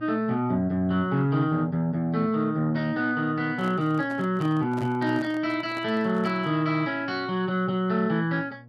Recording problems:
hum; 60 Hz, harmonics up to 840 Hz, SNR 21 dB
handling noise; from 3.5 to 6.5 s; peak -10 dB vs average level

